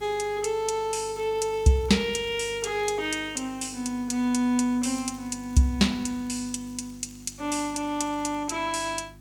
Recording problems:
hum; 50 Hz, harmonics up to 350 Hz, SNR 23 dB
background hiss; SNR 30 dB
crackling; from 1 to 3 s and from 5 to 8.5 s; loose cable, SNR 29 dB

